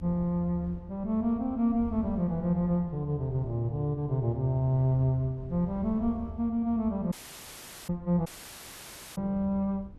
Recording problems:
rumble; below 94 Hz, strongest tone 78 Hz, SNR 15 dB
dropout; at 7 s for 1 s and at 8.5 s for 1 s

